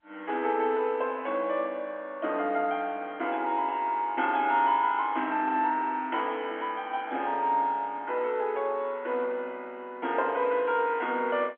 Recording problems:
phone line; 240 Hz to 3.4 kHz, G.711

